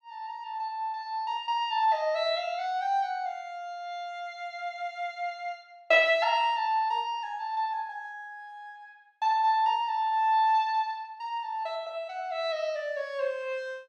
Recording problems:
none

